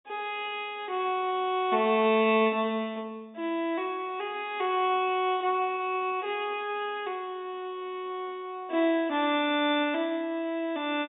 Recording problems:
low-pass filter; nothing above 4 kHz

